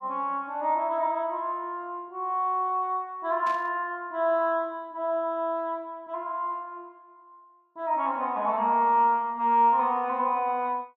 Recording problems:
static burst; at 3.5 s; peak -13 dB vs average level

